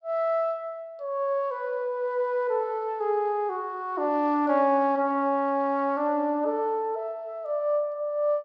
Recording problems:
none

